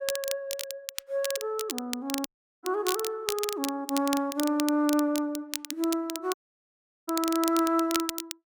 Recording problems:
crackling; vinyl, SNR 6 dB
dropout; at 2.5 s and at 6.5 s for 0.5 s

